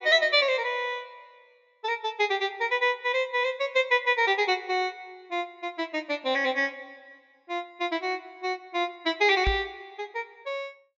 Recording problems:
treble missing; nothing above 7.3 kHz
microphone bump; at 9.5 s; peak +1 dB vs average level

